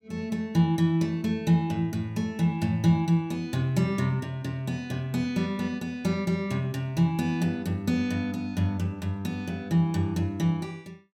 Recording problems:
none

